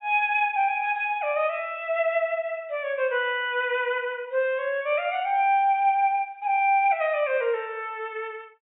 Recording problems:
treble missing; nothing above 4 kHz

